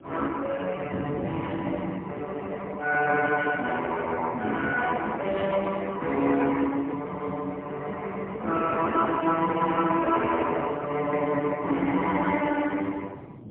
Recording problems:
telephone audio; 220 Hz to 3.2 kHz, AMR-NB, then MP3
wind noise; below 330 Hz, SNR 16 dB

